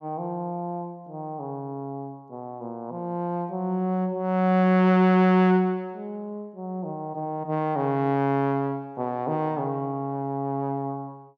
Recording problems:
none

